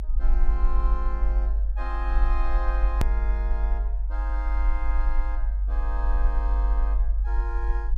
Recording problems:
low-frequency rumble; below 48 Hz, SNR -11 dB
edit click; at 3 s

